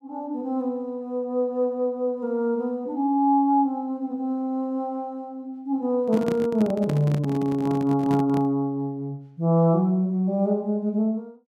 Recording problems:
handling noise; from 6 to 8.5 s; peak -1 dB vs average level

